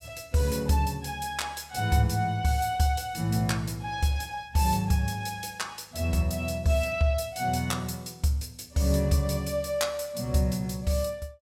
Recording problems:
none

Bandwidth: 16.5 kHz